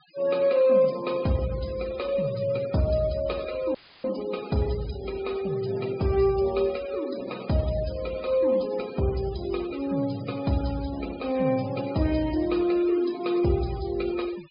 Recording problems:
low-pass filter; nothing above 5.1 kHz
noise reduction artefacts; signal-to-artefact ratio 18 dB
dropout; at 4 s; filled with static

